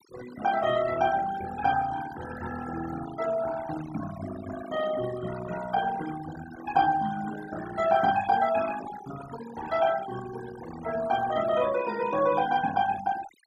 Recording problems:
noise reduction artefacts; signal-to-artefact ratio 12 dB

